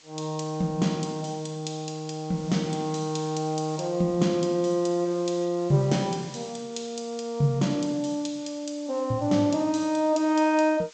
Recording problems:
low-pass filter; nothing above 8 kHz
hiss; slope +1 dB per octave, SNR 22 dB

